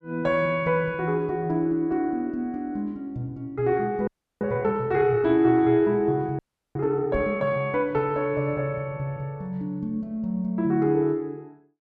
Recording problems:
frozen audio; at 4 s and at 6.5 s
microphone thump; at 7 s; peak -4 dB vs average level

